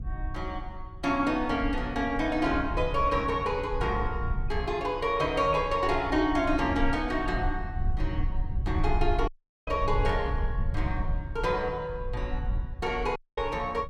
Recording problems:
low-frequency rumble; below 76 Hz, SNR 6 dB
dropout; at 9.5 s and at 13 s

